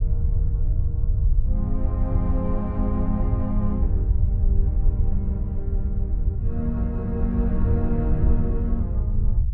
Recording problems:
low-frequency rumble; below 80 Hz, SNR -5 dB

